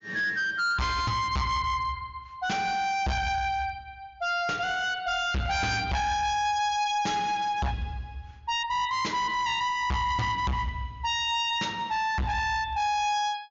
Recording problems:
low-pass filter; nothing above 7.1 kHz
distorted audio; hard clipping, signal-to-distortion ratio 6 dB

